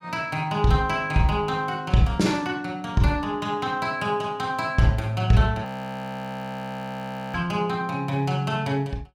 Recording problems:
audio freezing; at 5.5 s for 1.5 s

